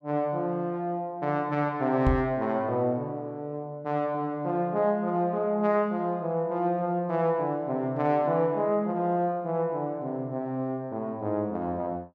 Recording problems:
microphone bump; at 2 s; peak +4 dB vs average level

